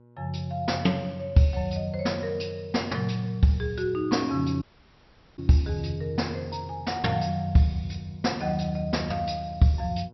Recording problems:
treble missing; nothing above 5.7 kHz
electrical hum; 60 Hz, harmonics up to 1.1 kHz, SNR 27 dB
audio cutting out; at 4.5 s for 1 s

